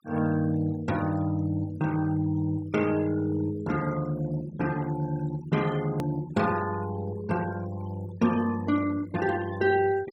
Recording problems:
noise reduction artefacts; signal-to-artefact ratio 19 dB
edit click; at 6 s

